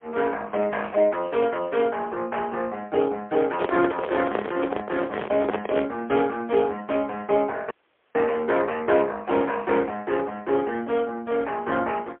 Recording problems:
phone line; 300 Hz to 3.4 kHz, AMR-NB, then MP3
handling noise; from 3.5 to 6 s; peak +3 dB vs average level
dropout; at 7.5 s

